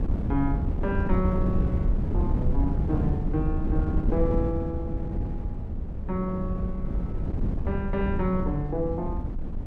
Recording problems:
wind noise; below 150 Hz, SNR -2 dB

